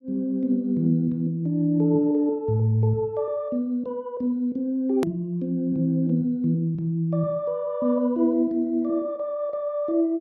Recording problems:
edit click; at 5 s

